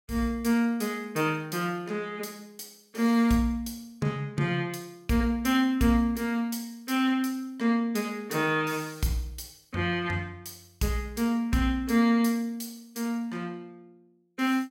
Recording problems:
none

